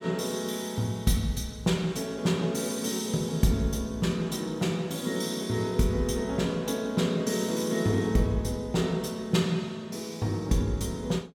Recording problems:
none

